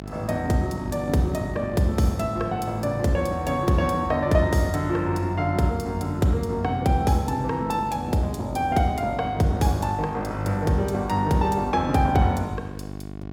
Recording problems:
mains hum; 50 Hz, harmonics up to 1.1 kHz, SNR 12 dB

